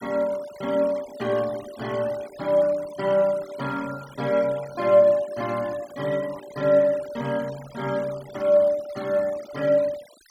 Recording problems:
denoising artefacts; signal-to-artefact ratio 20 dB

